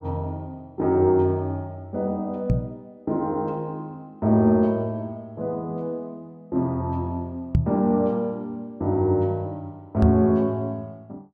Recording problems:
microphone bump; at 2.5 s, at 7.5 s and at 10 s; peak +8 dB vs average level

